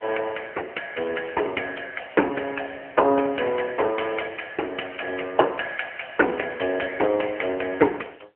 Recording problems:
telephone audio; 280 Hz to 3 kHz, AMR-NB

